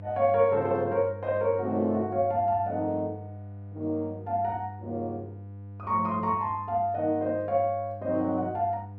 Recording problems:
electrical hum; 50 Hz, harmonics up to 700 Hz, SNR 14 dB

